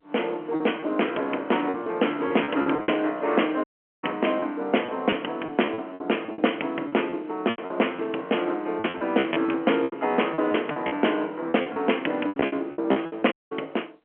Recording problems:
phone line; 240 Hz to 3.2 kHz, G.711
packet loss; 13% of the sound replaced, filled with repeated pitch periods
audio cutting out; at 3.5 s and at 13 s

